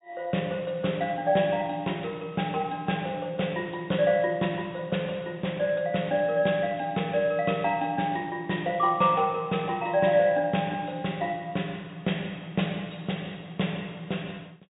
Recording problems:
low-pass filter; nothing above 4 kHz

